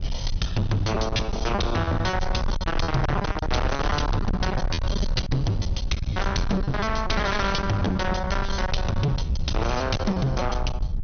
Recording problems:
treble cut off; nothing above 6.3 kHz
distorted audio; hard clipping, uneven, signal-to-distortion ratio 5 dB
low-frequency rumble; below 140 Hz, SNR 3 dB
lost packets; 11% of the sound replaced, filled with repeated pitch periods

